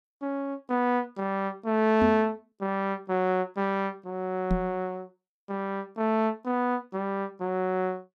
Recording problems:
microphone bump; at 2 s and at 4.5 s; peak +5 dB vs average level

